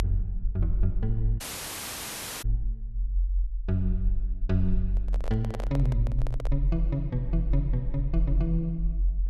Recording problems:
low-frequency rumble; below 46 Hz, strongest tone 44 Hz, SNR 0 dB
dropout; at 1.5 s for 1 s
handling noise; from 5 to 6.5 s; peak -2 dB vs average level

